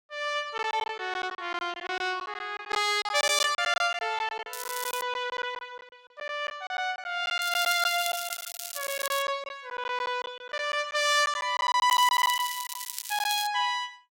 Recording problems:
lost packets; 12% of the sound replaced, filled with silence
crackling; at 4.5 s, from 7.5 to 9 s and from 12 to 13 s; loose cable, SNR 8 dB

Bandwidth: 16.5 kHz